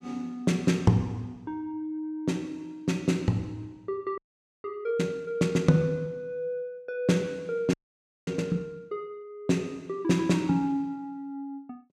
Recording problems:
frozen audio; at 4 s and at 7.5 s for 0.5 s

